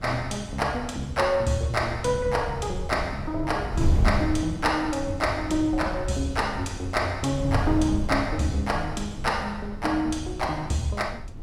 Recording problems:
wind on the microphone; below 110 Hz, SNR 7 dB

